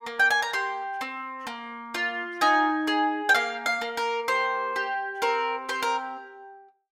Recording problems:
none

